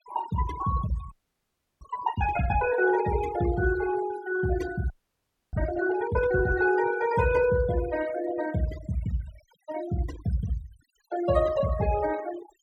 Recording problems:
noise reduction artefacts; signal-to-artefact ratio 13 dB
frozen audio; at 1 s for 0.5 s and at 5 s for 0.5 s

